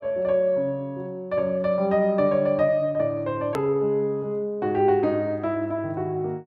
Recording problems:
edit click; at 3.5 s

